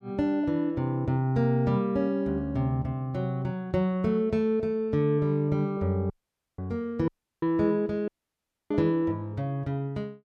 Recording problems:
dropout; at 6 s, at 7 s and at 8 s for 0.5 s

